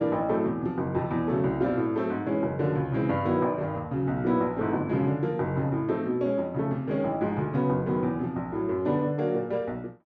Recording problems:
none

